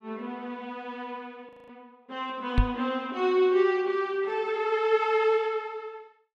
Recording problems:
frozen audio; at 1.5 s
knock on the microphone; at 2.5 s; peak +7 dB vs average level

